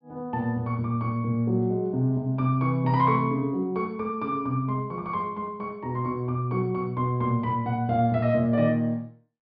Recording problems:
treble cut off; nothing above 5.5 kHz

